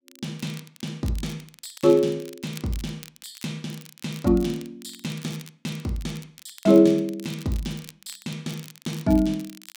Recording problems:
crackle; vinyl, SNR 20 dB

